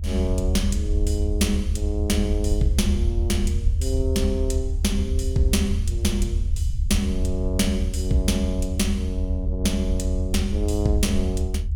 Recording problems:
rumble; below 78 Hz, SNR 0 dB

